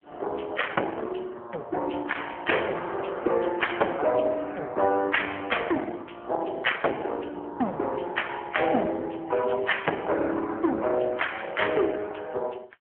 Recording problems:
phone line; 280 Hz to 3.3 kHz, AMR-NB

